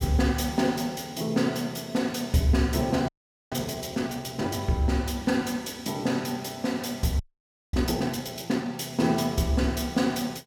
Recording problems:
frozen audio; at 3 s and at 7 s for 0.5 s

